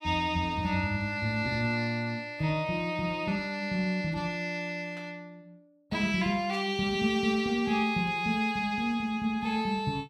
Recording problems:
burst of static; at 5 s and at 6.5 s; peak -14 dB vs average level

